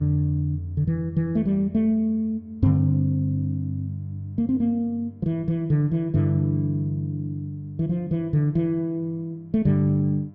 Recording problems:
hum; 50 Hz, harmonics up to 1 kHz, SNR 27 dB

